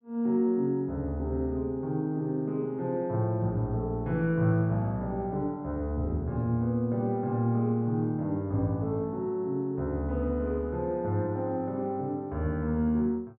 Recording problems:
none

